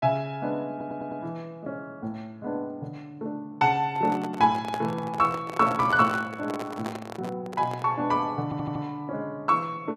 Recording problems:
audio stuttering; at 0.5 s and at 8.5 s
handling noise; from 4 to 8 s; peak -2 dB vs average level

